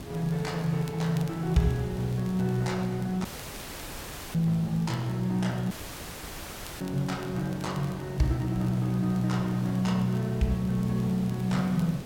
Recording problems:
hiss; slope -6 dB per octave, SNR 14 dB
crackling; vinyl, SNR 27 dB
audio cutting out; at 3.5 s for 1 s and at 5.5 s for 1 s

